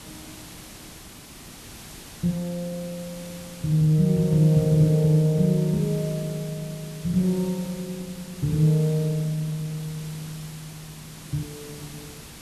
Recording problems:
hiss; SNR 17 dB

